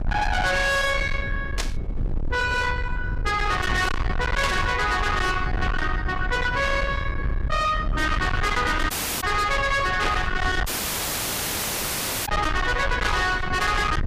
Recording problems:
distorted audio; soft clipping, signal-to-distortion ratio 6 dB
rumble; below 780 Hz, SNR 5 dB
burst of static; 4 times, first at 1.5 s; peak -1 dB vs average level
dropout; at 9 s and at 11 s for 1.5 s

